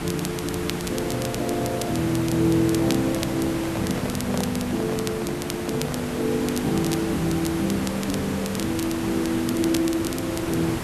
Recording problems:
background hiss; slope -5 dB per octave, SNR 6 dB
crackle; vinyl, SNR 12 dB
microphone handling noise; from 2.5 to 6.5 s; peak -4 dB vs average level

